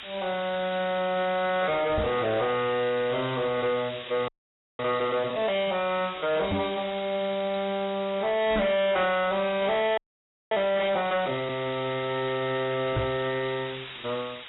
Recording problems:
codec artefacts; AAC, log-spectral distance 20 dB, nothing above 3.8 kHz
distortion; hard clipping, signal-to-distortion ratio 9 dB
background hiss; SNR 12 dB
knock on the microphone; 4 times, first at 2 s; peak +3 dB vs average level
frozen audio; at 4.5 s for 0.5 s and at 10 s for 0.5 s

